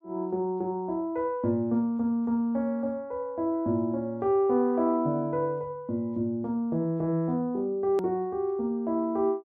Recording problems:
edit click; at 8 s

